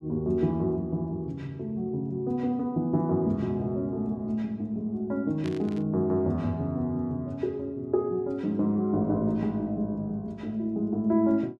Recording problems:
burst of static; at 5.5 s; peak -10 dB vs average level

